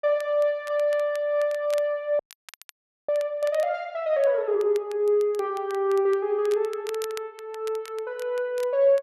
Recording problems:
crackle; vinyl, SNR 22 dB
audio freezing; at 2 s for 1 s

